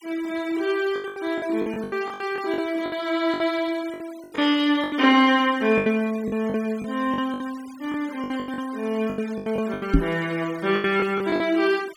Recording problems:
noise reduction artefacts; signal-to-artefact ratio 21 dB
packet loss; 15% of the sound replaced, filled with the last packet
microphone thump; at 10 s; peak +9 dB vs average level

